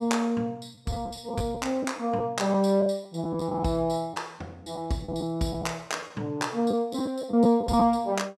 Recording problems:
lost packets; 6% of the sound replaced, filled with the last packet

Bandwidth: 14.5 kHz